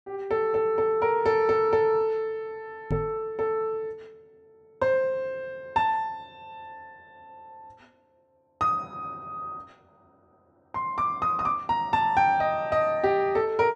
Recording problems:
microphone thump; at 3 s; peak 0 dB vs average level

